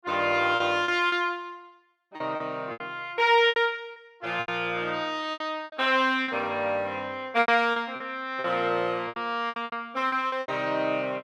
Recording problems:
packet loss; 12% of the sound replaced, filled with repeated pitch periods

